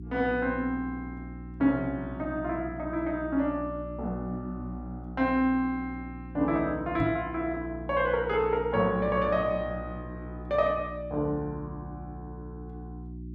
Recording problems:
hum; 60 Hz, harmonics up to 360 Hz, SNR 12 dB
microphone thump; at 7 s; peak +3 dB vs average level

